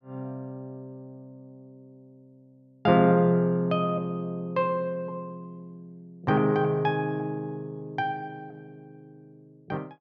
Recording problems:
none

